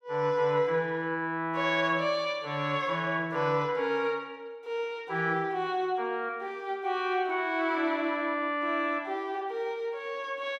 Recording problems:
none

